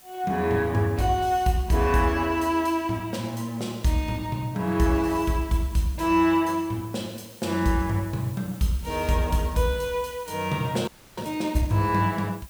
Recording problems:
background hiss; slope -1 dB per octave, SNR 22 dB
frozen audio; at 11 s

